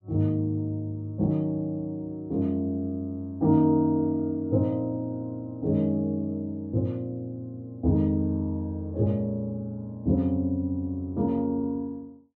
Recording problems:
none

